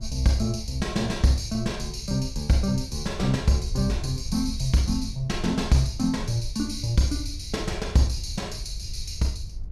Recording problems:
wind noise; below 74 Hz, SNR 10 dB

